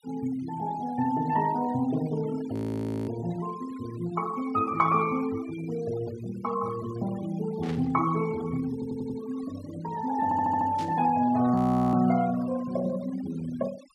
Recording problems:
denoising artefacts; signal-to-artefact ratio 18 dB
audio freezing; at 2.5 s for 0.5 s and at 12 s
static burst; at 7.5 s and at 11 s; peak -10 dB vs average level
audio stuttering; at 8.5 s and at 10 s

